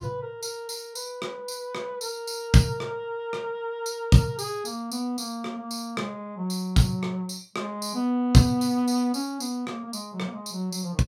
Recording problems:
none

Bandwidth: 16 kHz